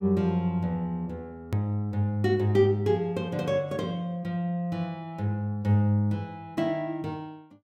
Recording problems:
click at an edit; at 1.5 s

